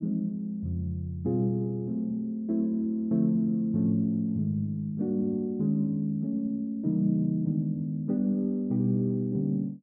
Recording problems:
low-pass filter; nothing above 4 kHz

